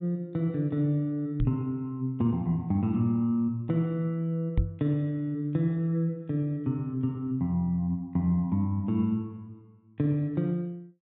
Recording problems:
low-pass filter; nothing above 4 kHz
microphone bump; at 1.5 s and at 4.5 s; peak +5 dB vs average level

